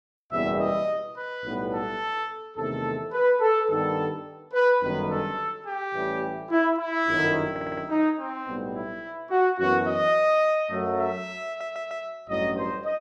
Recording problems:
audio stuttering; at 7.5 s and at 11 s

